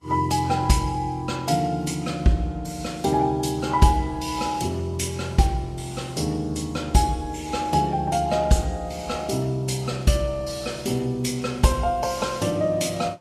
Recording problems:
lossy codec; Vorbis, log-spectral distance 3 dB, nothing above 12.3 kHz

